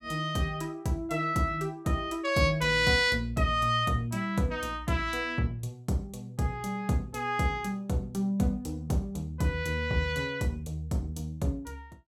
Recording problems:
none

